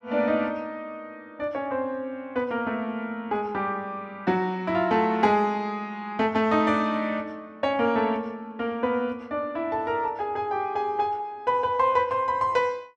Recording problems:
none

